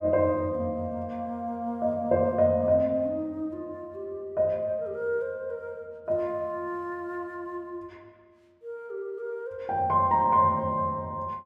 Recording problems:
none

